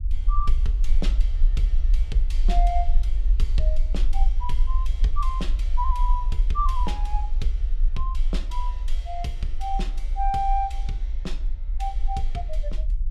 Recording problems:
rumble; below 42 Hz, strongest tone 20 Hz, SNR -5 dB

